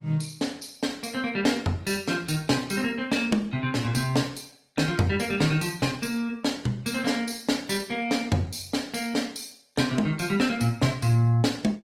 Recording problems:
lossy compression; Opus, log-spectral distance 4 dB, nothing above 16.5 kHz

